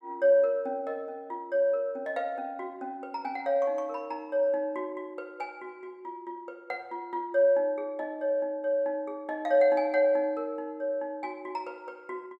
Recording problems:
none

